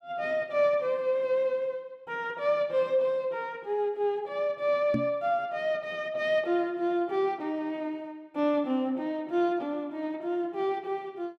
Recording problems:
knock on the microphone; at 5 s; peak +4 dB vs average level

